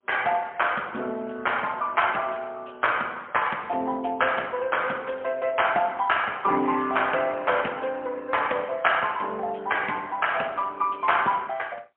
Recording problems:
phone line; 220 Hz to 3.2 kHz, AMR-NB, then MP3

